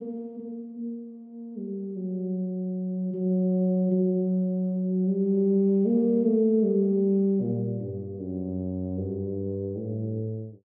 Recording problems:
none

